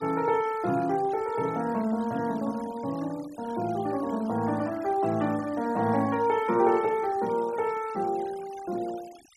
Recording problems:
noise reduction artefacts; signal-to-artefact ratio 21 dB

